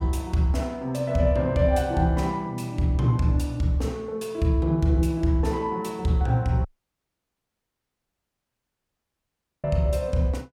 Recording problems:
dropout; at 6.5 s for 3 s

